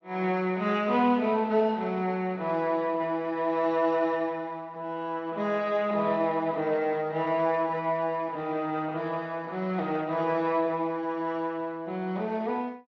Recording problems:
lossy codec; Speex, log-spectral distance 2 dB

